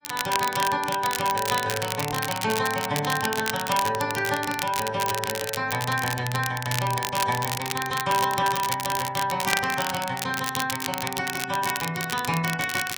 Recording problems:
lossy compression; AAC, log-spectral distance 3 dB
crackle; vinyl, SNR 5 dB

